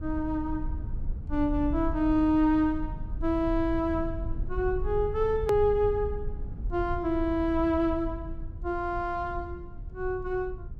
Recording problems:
rumble; below 76 Hz, SNR 9 dB
edit click; at 5.5 s

